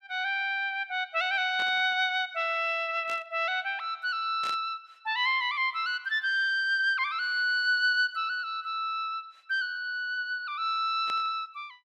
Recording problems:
static burst; 4 times, first at 1.5 s; peak -9 dB vs average level

